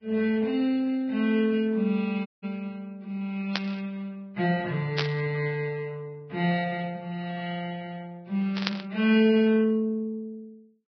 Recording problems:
lossy compression; Vorbis, log-spectral distance 2 dB, nothing above 11.3 kHz
dropout; at 2.5 s
burst of static; at 3.5 s, at 5 s and at 8.5 s; peak +4 dB vs average level

